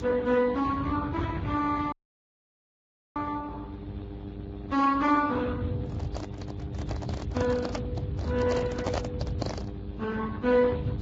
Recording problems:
lossy compression; Speex, then Vorbis, log-spectral distance 3 dB
mains hum; 50 Hz, harmonics up to 2 kHz, SNR 12 dB
low-frequency rumble; below 140 Hz, SNR 9 dB
audio cutting out; at 2 s for 1 s
microphone handling noise; from 6 to 9.5 s; peak +3 dB vs average level

